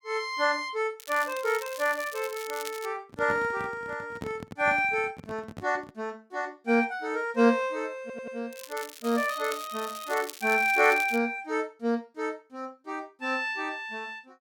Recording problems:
crackle; from 1 to 3 s and from 8.5 to 11 s; loose cable, SNR 14 dB
microphone handling noise; from 3 to 6 s; peak -4 dB vs average level
stutter; at 8 s

